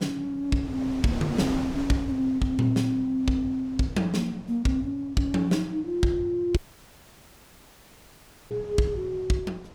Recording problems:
wind on the microphone; below 700 Hz, SNR 13 dB
dropout; at 6.5 s for 2 s

